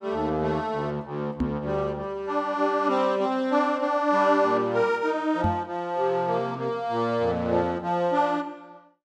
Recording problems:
microphone thump; at 1.5 s and at 5.5 s; peak +2 dB vs average level

